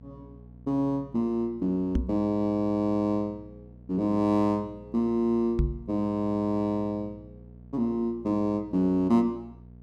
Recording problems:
hum; 60 Hz, harmonics up to 660 Hz, SNR 22 dB
microphone bump; at 2 s and at 5.5 s; peak +4 dB vs average level

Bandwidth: 13.5 kHz